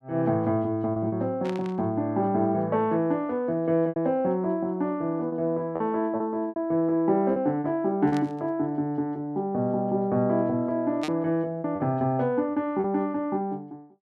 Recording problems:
packet loss; 5% of the sound replaced, filled with repeated pitch periods
burst of static; at 1.5 s, at 8 s and at 11 s; peak -4 dB vs average level

